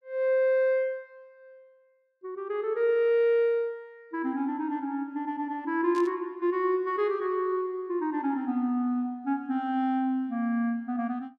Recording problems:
burst of static; at 6 s; peak -14 dB vs average level

